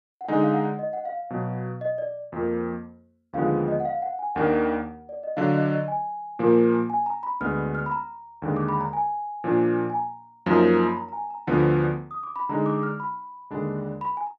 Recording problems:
none

